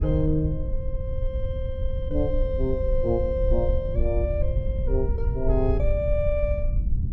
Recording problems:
low-frequency rumble; below 74 Hz, SNR 0 dB

